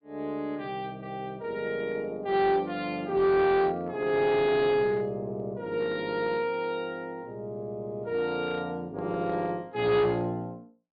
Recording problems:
treble cut off; nothing above 4.7 kHz
distortion; hard clipping, uneven, signal-to-distortion ratio 9 dB

